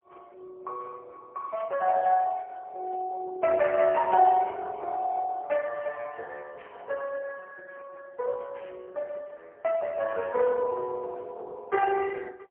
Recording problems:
phone line; 320 Hz to 3 kHz, AMR-NB, then MP3
static burst; 4 times, first at 1.5 s; peak -18 dB vs average level

